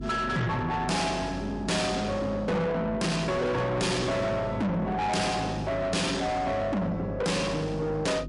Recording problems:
lossy codec; MP3, log-spectral distance 2 dB, nothing above 11 kHz
distortion; soft clipping, signal-to-distortion ratio 6 dB
hum; 50 Hz, harmonics up to 400 Hz, SNR 12 dB

